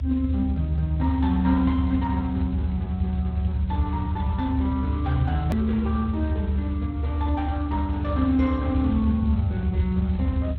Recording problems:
codec artefacts; Speex, log-spectral distance 2 dB, nothing above 17.1 kHz
low-frequency rumble; below 88 Hz, strongest tone 74 Hz, SNR 1 dB
edit click; at 5.5 s

